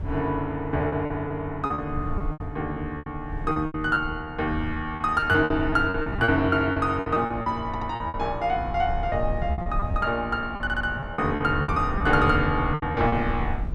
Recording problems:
low-frequency rumble; below 96 Hz, SNR 10 dB
lost packets; 13% of the sound replaced, filled with repeated pitch periods
audio stuttering; at 7.5 s and at 11 s

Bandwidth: 12.5 kHz